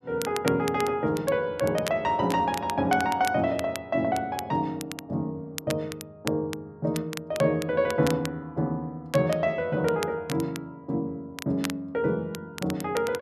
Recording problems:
crackling; vinyl, SNR 13 dB

